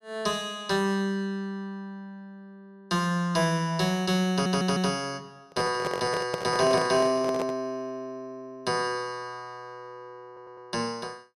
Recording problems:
audio stuttering; at 4.5 s and at 10 s
handling noise; from 5.5 to 7.5 s; peak 0 dB vs average level

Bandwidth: 13 kHz